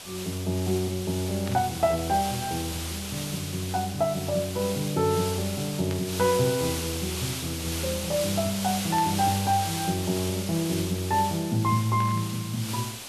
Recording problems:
background hiss; SNR 6 dB
burst of static; 4 times, first at 1.5 s; peak -8 dB vs average level

